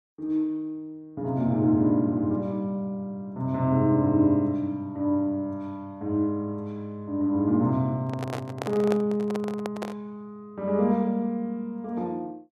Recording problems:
handling noise; from 8 to 10 s; peak -1 dB vs average level

